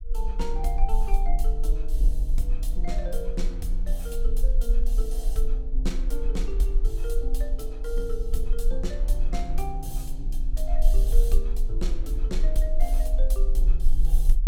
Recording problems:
low-frequency rumble; below 38 Hz, strongest tone 22 Hz, SNR -8 dB

